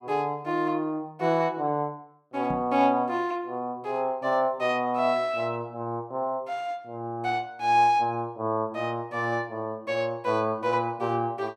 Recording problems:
microphone thump; at 2.5 s; peak -4 dB vs average level

